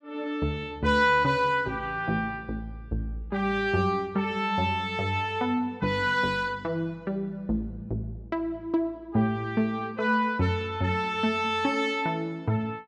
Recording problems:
none

